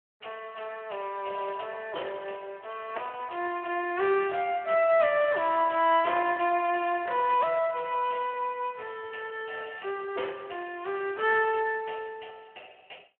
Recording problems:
telephone audio; 320 Hz to 3.2 kHz, Speex

